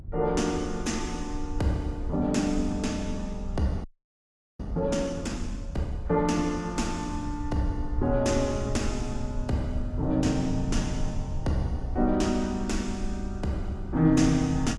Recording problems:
lossy codec; AAC, log-spectral distance 2 dB, nothing above 11 kHz
low-frequency rumble; below 78 Hz, SNR 9 dB
frozen audio; at 4 s for 1 s

